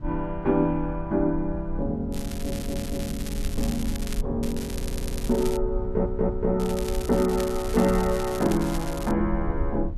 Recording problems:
low-frequency rumble; below 58 Hz, SNR 9 dB
crackling; from 2 to 4 s, from 4.5 to 5.5 s and from 6.5 to 9 s; loose cable, SNR 13 dB
audio stuttering; at 2.5 s, at 4.5 s and at 6 s

